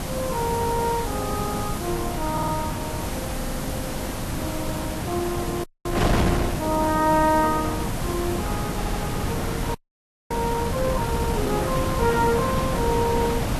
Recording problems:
codec artefacts; Vorbis, log-spectral distance 7 dB
background hiss; slope +2 dB per octave, SNR 11 dB
wind noise; below 690 Hz, SNR 1 dB
audio stuttering; 4 times, first at 2.5 s
audio freezing; at 5.5 s and at 10 s for 0.5 s

